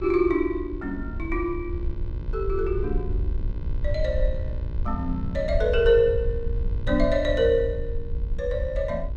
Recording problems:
hum; 60 Hz, harmonics up to 3.1 kHz, SNR 20 dB
wind noise; below 70 Hz, SNR 5 dB

